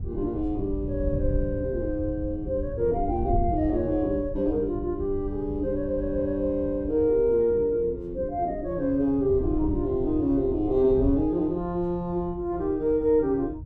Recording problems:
wind noise; below 100 Hz, SNR 10 dB

